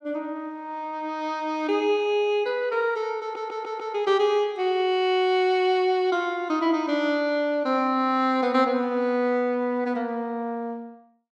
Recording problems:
stutter; at 3 s

